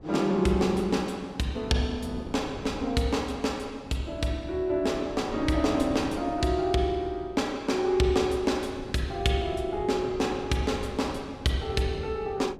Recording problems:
wind noise; below 420 Hz, SNR 14 dB

